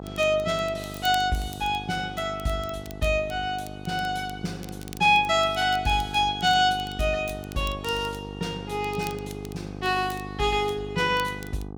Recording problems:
mains hum; 50 Hz, harmonics up to 1.3 kHz, SNR 13 dB
crackle; vinyl, SNR 22 dB

